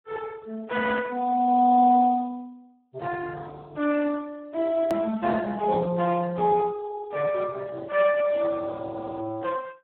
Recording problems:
telephone audio; 150 Hz to 2.5 kHz, Speex
edit click; at 5 s

